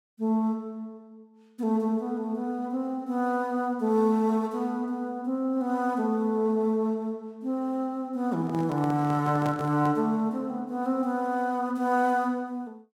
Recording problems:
microphone handling noise; from 8.5 to 10 s; peak -3 dB vs average level

